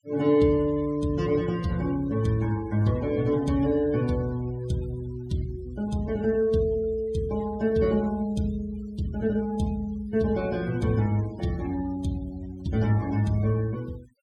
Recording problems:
noise reduction artefacts; signal-to-artefact ratio 22 dB

